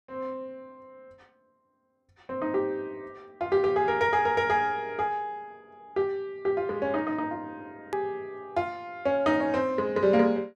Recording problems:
hard cut with a click; at 8 s

